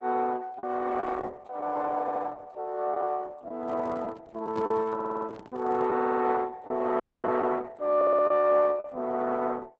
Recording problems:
codec artefacts; Opus, log-spectral distance 4 dB
packet loss; 4% of the sound replaced, filled with the last packet
audio stuttering; 4 times, first at 2 s
handling noise; from 3.5 to 6 s; peak -7 dB vs average level
dropout; at 7 s

